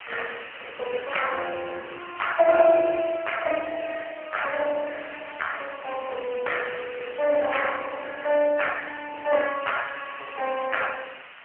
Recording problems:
telephone audio; 370 Hz to 3 kHz, AMR-NB
background hiss; SNR 15 dB

